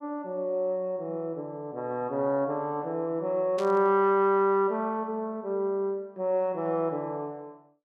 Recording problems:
burst of static; at 3.5 s; peak -10 dB vs average level

